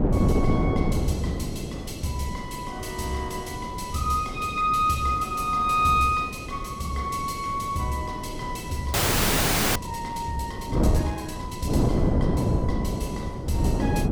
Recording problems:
wind noise; below 320 Hz, SNR 1 dB
audio freezing; at 9 s for 1 s

